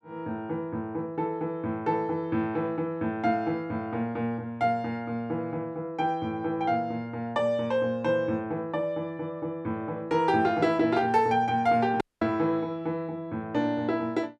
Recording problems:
dropout; at 12 s

